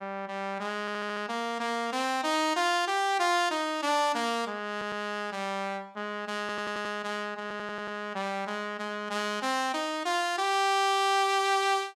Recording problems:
stutter; 4 times, first at 1 s

